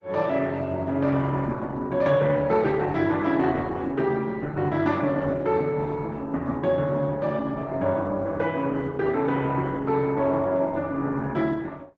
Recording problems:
codec artefacts; Opus, log-spectral distance 3 dB

